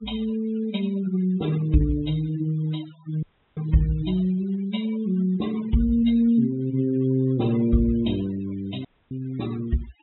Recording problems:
low-pass filter; nothing above 3.9 kHz
noise reduction artefacts; signal-to-artefact ratio 19 dB
audio cutting out; at 3 s and at 9 s

